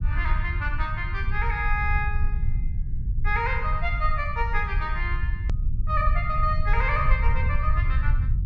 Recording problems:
treble cut off; nothing above 8 kHz
low-frequency rumble; below 72 Hz, SNR -1 dB
edit click; at 5.5 s

